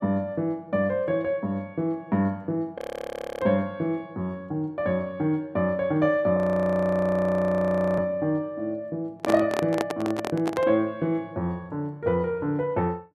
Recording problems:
audio freezing; at 3 s for 0.5 s and at 6.5 s for 1.5 s
handling noise; from 9 to 11 s; peak +2 dB vs average level

